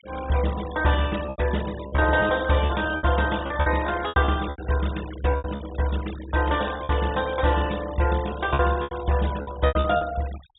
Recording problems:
treble cut off; nothing above 4 kHz
denoising artefacts; signal-to-artefact ratio 16 dB
packet loss; 11% of the sound replaced, filled with repeated pitch periods

